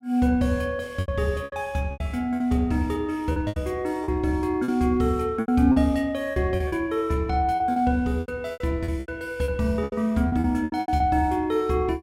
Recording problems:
lost packets; 12% of the sound replaced, filled with repeated pitch periods

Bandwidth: 16 kHz